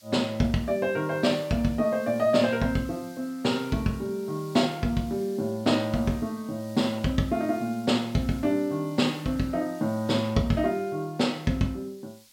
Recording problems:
background hiss; SNR 24 dB

